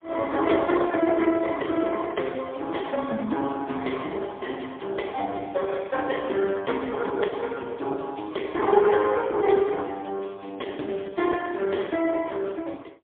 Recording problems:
telephone audio; 220 Hz to 3.3 kHz, AMR-NB, then MP3

